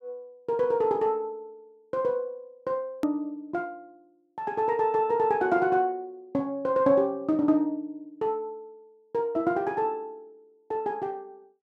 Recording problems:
edit click; at 3 s

